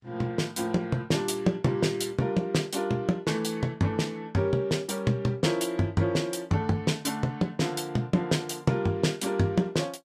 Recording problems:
lossy codec; Vorbis, log-spectral distance 2 dB, nothing above 15.1 kHz

